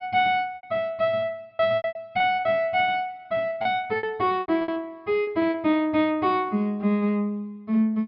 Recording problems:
treble missing; nothing above 5.5 kHz
packet loss; 11% of the sound replaced, filled with repeated pitch periods

